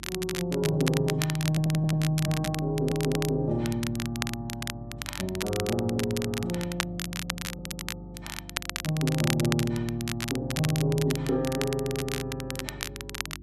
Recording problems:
mains hum; 50 Hz, harmonics up to 350 Hz, SNR 15 dB
crackling; vinyl, SNR 7 dB
audio stuttering; at 1.5 s, at 2.5 s and at 7.5 s

